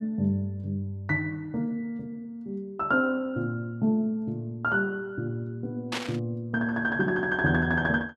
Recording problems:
static burst; at 6 s; peak +1 dB vs average level

